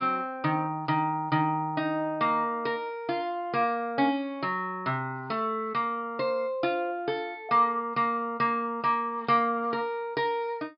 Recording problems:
treble missing; nothing above 5.2 kHz

